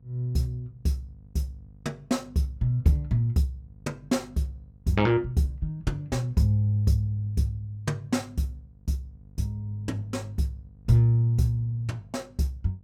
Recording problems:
hum; 50 Hz, harmonics up to 500 Hz, SNR 25 dB

